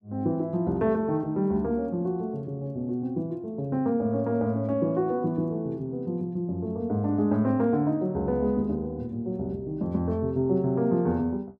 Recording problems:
none

